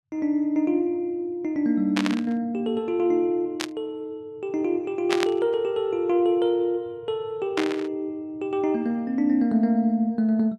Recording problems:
burst of static; 4 times, first at 2 s; peak +2 dB vs average level

